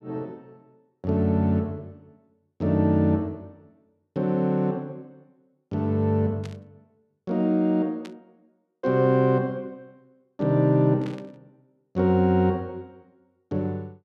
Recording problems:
static burst; at 6.5 s, at 8 s and at 11 s; peak -15 dB vs average level

